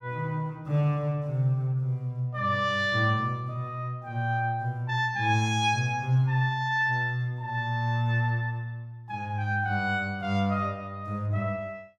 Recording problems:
none

